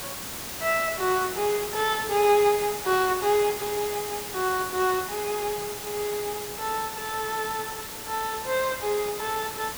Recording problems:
background hiss; slope -2 dB per octave, SNR 7 dB

